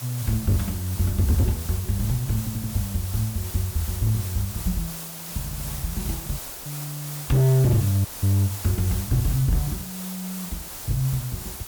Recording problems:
distorted audio; hard clipping, signal-to-distortion ratio 7 dB
hiss; slope -2 dB per octave, SNR 8 dB
stutter; at 2.5 s and at 5.5 s
audio cutting out; at 6.5 s, at 8 s and at 11 s

